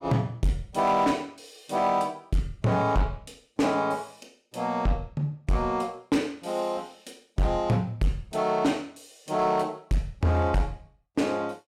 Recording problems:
distorted audio; hard clipping, signal-to-distortion ratio 11 dB

